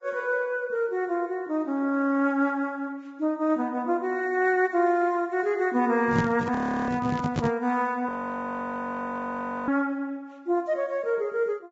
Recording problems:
treble missing; nothing above 7.6 kHz
lossy codec; Vorbis, log-spectral distance 2 dB
handling noise; from 6 to 7.5 s; peak +4 dB vs average level
audio freezing; at 6.5 s and at 8 s for 1.5 s

